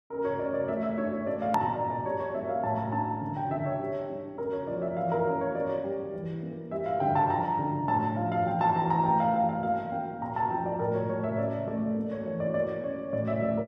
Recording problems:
edit click; at 1.5 s

